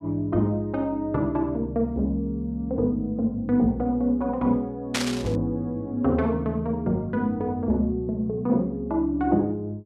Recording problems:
static burst; at 5 s; peak +3 dB vs average level

